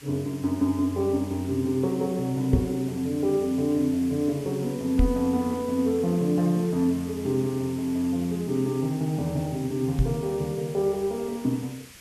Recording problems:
hiss; SNR 19 dB
microphone bump; at 2.5 s, at 5 s and at 10 s; peak +7 dB vs average level

